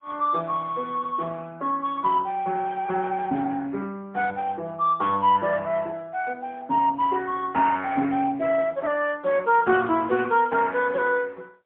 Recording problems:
phone line; 170 Hz to 3.5 kHz, AMR-NB, then MP3

